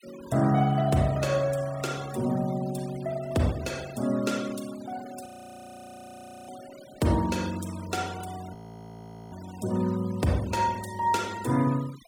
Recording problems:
denoising artefacts; signal-to-artefact ratio 19 dB
audio freezing; at 5.5 s for 1 s and at 8.5 s for 1 s

